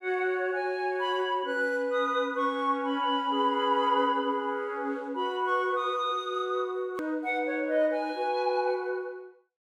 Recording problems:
edit click; at 7 s

